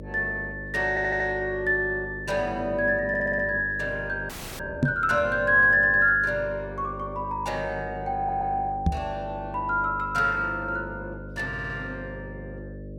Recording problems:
electrical hum; 50 Hz, harmonics up to 600 Hz, SNR 14 dB
audio stuttering; 4 times, first at 1 s
audio freezing; at 4.5 s
knock on the microphone; at 5 s and at 9 s; peak +6 dB vs average level

